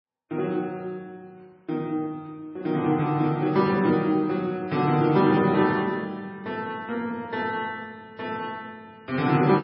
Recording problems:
codec artefacts; MP3, log-spectral distance 2 dB, nothing above 4.5 kHz

